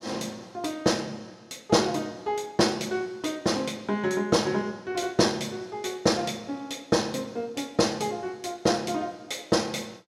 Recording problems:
none

